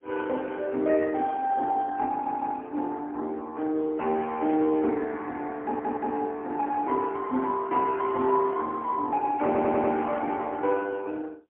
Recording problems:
phone line; 220 Hz to 3.2 kHz, AMR-NB, then MP3
stutter; at 2 s, at 5.5 s and at 9.5 s

